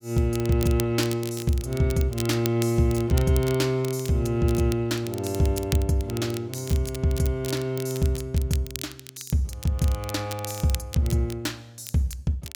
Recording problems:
crackle; vinyl, SNR 14 dB

